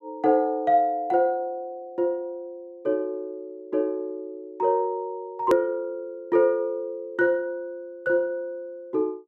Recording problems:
hard cut with a click; at 5.5 s

